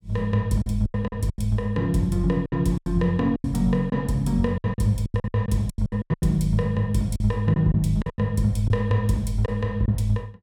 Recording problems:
lost packets; 13% of the sound replaced, filled with silence

